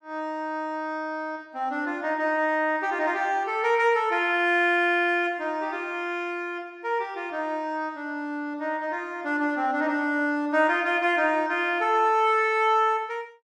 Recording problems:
none

